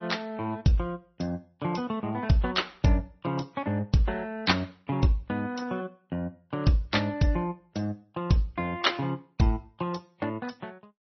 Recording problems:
low-pass filter; nothing above 5.8 kHz
lossy codec; AAC, then MP3, log-spectral distance 3 dB

